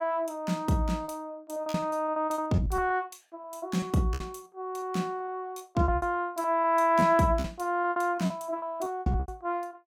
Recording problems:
packet loss; 13% of the sound replaced, filled with repeated pitch periods

